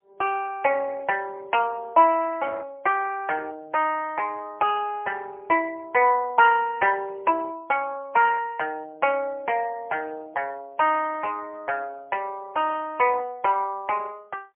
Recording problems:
phone line; 280 Hz to 3 kHz, AMR-NB, then MP3

